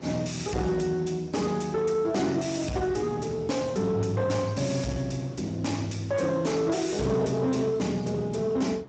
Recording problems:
lossy compression; Speex, log-spectral distance 5 dB, nothing above 7.8 kHz
distorted audio; soft clipping, signal-to-distortion ratio 10 dB
wind noise; below 550 Hz, SNR 19 dB

